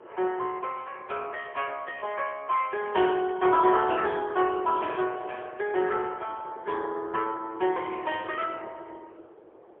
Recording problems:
telephone audio; 300 Hz to 3.3 kHz, AMR-NB, then MP3
wind noise; below 640 Hz, SNR 20 dB

